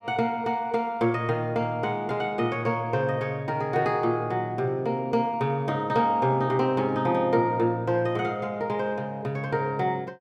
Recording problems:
none

